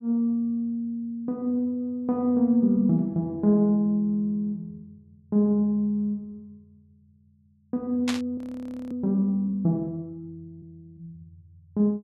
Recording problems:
static burst; at 8 s; peak -1 dB vs average level
audio freezing; at 8.5 s for 0.5 s

